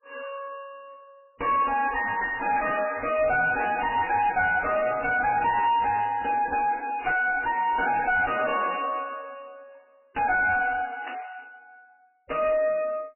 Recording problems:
codec artefacts; MP3, log-spectral distance 6 dB, nothing above 2.5 kHz
distorted audio; soft clipping, signal-to-distortion ratio 5 dB
burst of static; at 7 s and at 11 s; peak -8 dB vs average level

